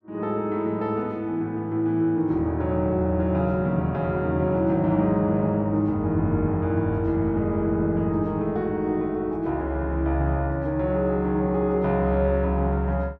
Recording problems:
none

